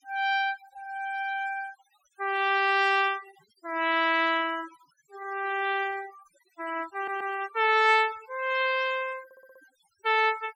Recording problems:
noise reduction artefacts; signal-to-artefact ratio 20 dB
audio stuttering; at 7 s and at 9.5 s

